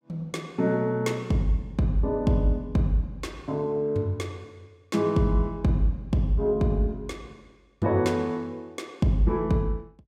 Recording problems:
none

